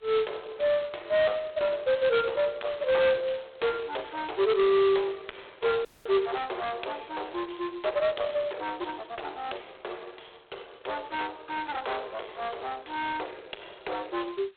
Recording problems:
phone line; 520 Hz to 3.9 kHz, G.726
distortion; soft clipping, signal-to-distortion ratio 8 dB
dropout; at 6 s

